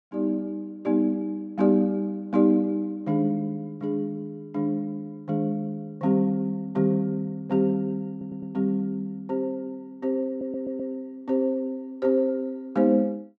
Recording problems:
stutter; at 8 s and at 10 s

